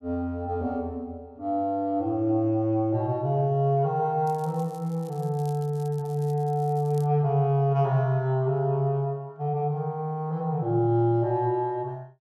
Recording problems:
crackling; from 4.5 to 7 s; loose cable, SNR 28 dB

